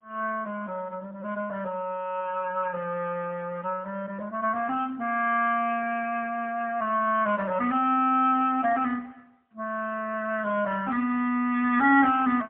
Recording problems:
phone line; 220 Hz to 3.3 kHz, AMR-NB, then MP3

